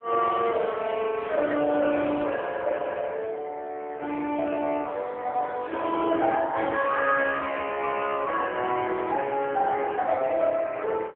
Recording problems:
phone line; 240 Hz to 3.5 kHz, AMR-NB

